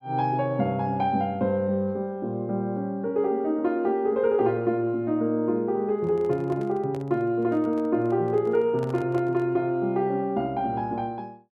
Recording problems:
microphone handling noise; from 6 to 9.5 s; peak -11 dB vs average level

